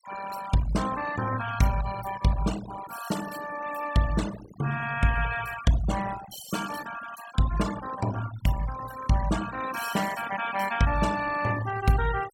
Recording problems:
noise reduction artefacts; signal-to-artefact ratio 11 dB

